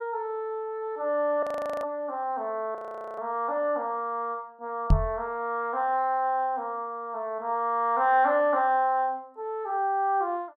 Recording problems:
frozen audio; at 1.5 s and at 3 s
microphone bump; at 5 s; peak +9 dB vs average level

